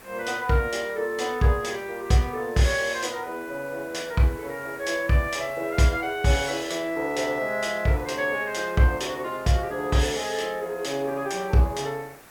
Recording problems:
background hiss; SNR 21 dB

